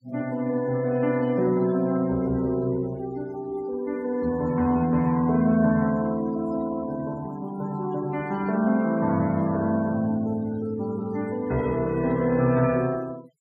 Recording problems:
noise reduction artefacts; signal-to-artefact ratio 22 dB

